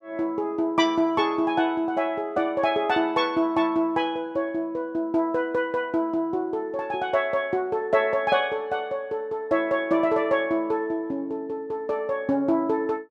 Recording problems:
none

